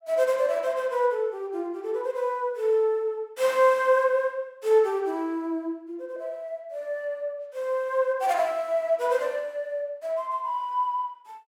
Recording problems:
none

